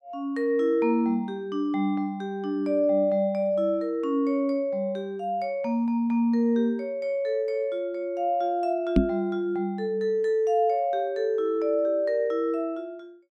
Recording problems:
microphone bump; at 9 s; peak +9 dB vs average level

